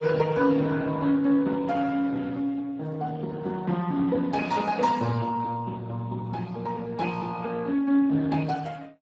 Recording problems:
codec artefacts; Speex, log-spectral distance 3 dB, nothing above 7.3 kHz

